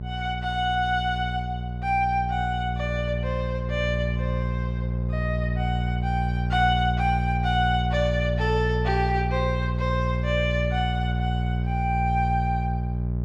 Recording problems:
mains hum; 60 Hz, harmonics up to 600 Hz, SNR 0 dB

